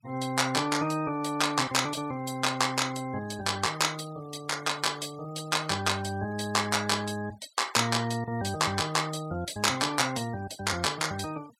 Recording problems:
noise reduction artefacts; signal-to-artefact ratio 20 dB

